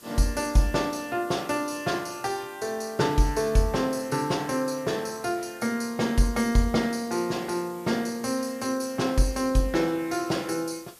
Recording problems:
background hiss; slope -1 dB per octave, SNR 22 dB

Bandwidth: 14.5 kHz